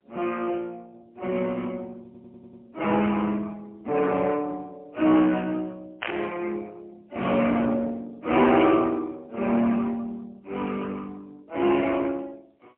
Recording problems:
telephone audio; 260 Hz to 3.1 kHz, AMR-NB, then MP3
distorted audio; soft clipping, signal-to-distortion ratio 13 dB
stutter; at 2 s
static burst; at 6 s; peak -1 dB vs average level

